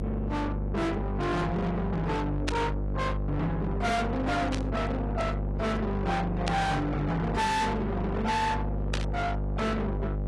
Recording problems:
lossy compression; AAC, log-spectral distance 2 dB, nothing above 11.3 kHz
distorted audio; soft clipping, signal-to-distortion ratio 6 dB
hum; 50 Hz, harmonics up to 1.1 kHz, SNR 2 dB
burst of static; 4 times, first at 2.5 s; peak -1 dB vs average level

